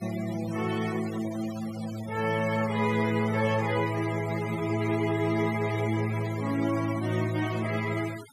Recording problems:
noise reduction artefacts; signal-to-artefact ratio 14 dB

